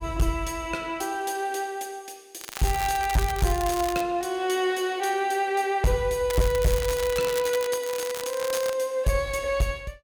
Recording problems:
distortion; hard clipping, signal-to-distortion ratio 12 dB
crackling; from 2.5 to 4 s and from 6.5 to 8.5 s; loose cable, SNR 10 dB

